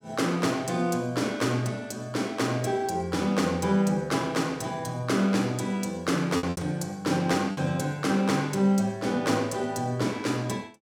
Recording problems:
lost packets; 2% of the sound replaced, filled with repeated pitch periods

